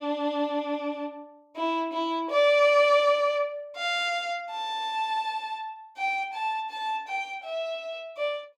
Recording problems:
none

